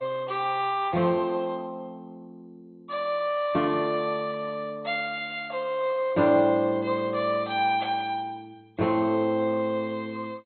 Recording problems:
codec artefacts; MP2, log-spectral distance 2 dB, nothing above 3.7 kHz

